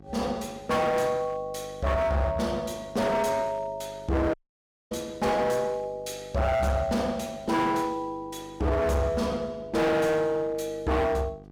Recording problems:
distortion; hard clipping, uneven, signal-to-distortion ratio 6 dB
hum; 50 Hz, harmonics up to 1.2 kHz, SNR 22 dB
audio cutting out; at 4.5 s for 0.5 s

